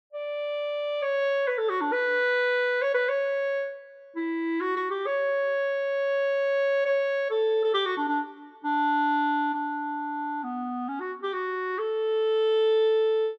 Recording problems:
none

